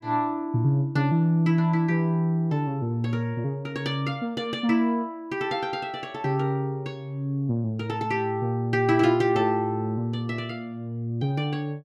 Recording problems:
none

